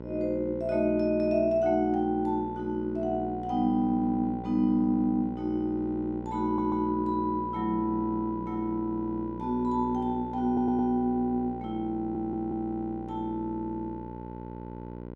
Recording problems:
hum; 60 Hz, harmonics up to 1.5 kHz, SNR 11 dB
stutter; at 6.5 s, at 10 s and at 12 s

